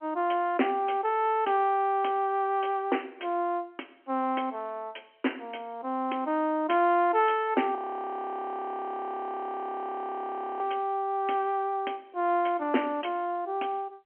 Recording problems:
phone line; 240 Hz to 3.2 kHz, G.711
frozen audio; at 8 s for 3 s

